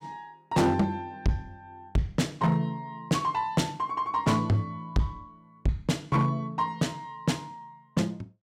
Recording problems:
distorted audio; hard clipping, signal-to-distortion ratio 7 dB

